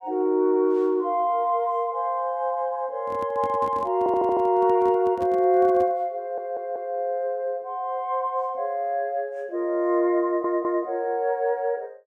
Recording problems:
handling noise; from 3 to 6 s; peak -10 dB vs average level
audio stuttering; at 4 s, at 6 s and at 10 s

